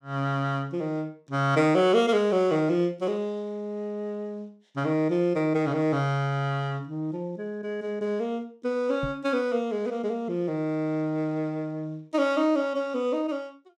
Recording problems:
microphone bump; at 9 s; peak -3 dB vs average level

